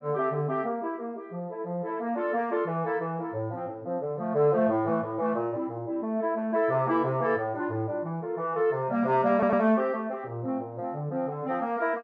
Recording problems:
stutter; at 9.5 s

